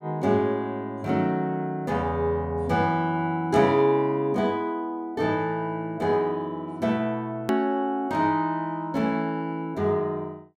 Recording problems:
hard cut with a click; at 7.5 s

